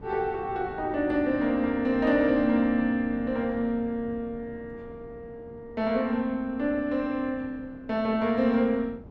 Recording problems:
wind noise; below 340 Hz, SNR 19 dB

